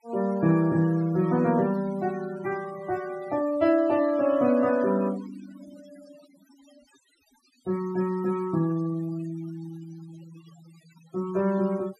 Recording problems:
noise reduction artefacts; signal-to-artefact ratio 20 dB

